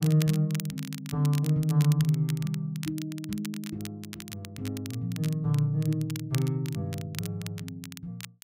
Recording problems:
crackling; vinyl, SNR 14 dB

